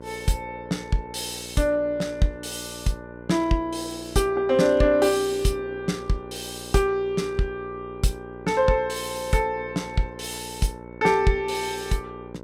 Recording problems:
electrical hum; 60 Hz, harmonics up to 1.6 kHz, SNR 16 dB

